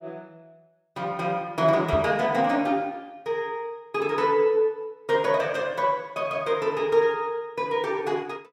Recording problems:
microphone bump; at 2 s; peak -1 dB vs average level

